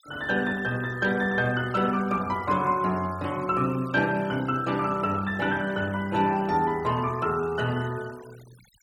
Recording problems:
noise reduction artefacts; signal-to-artefact ratio 22 dB

